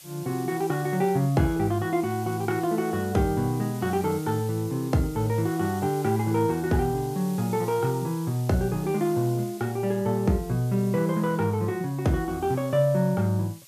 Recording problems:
background hiss; slope +3 dB per octave, SNR 19 dB

